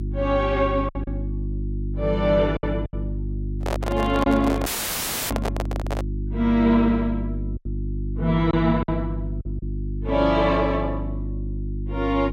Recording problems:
electrical hum; 50 Hz, harmonics up to 350 Hz, SNR 6 dB
packet loss; 4% of the sound replaced, filled with silence
microphone handling noise; from 3.5 to 6 s; peak -1 dB vs average level
audio cutting out; at 4.5 s for 0.5 s

